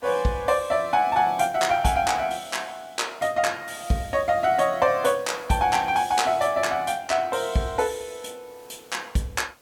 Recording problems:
background hiss; slope -3 dB per octave, SNR 28 dB

